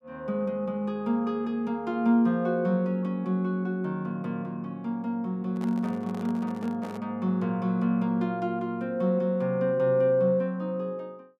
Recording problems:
microphone handling noise; from 5.5 to 7 s; peak -11 dB vs average level

